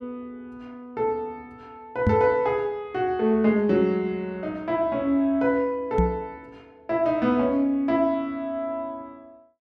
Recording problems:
microphone thump; at 2 s and at 6 s; peak +6 dB vs average level

